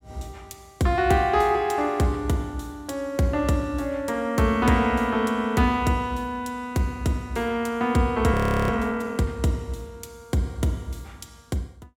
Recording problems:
frozen audio; at 8.5 s

